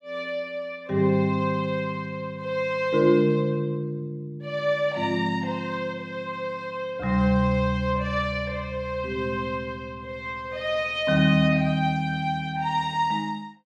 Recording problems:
none

